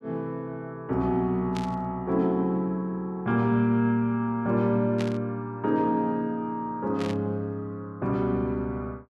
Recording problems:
static burst; at 1.5 s, at 5 s and at 7 s; peak -6 dB vs average level

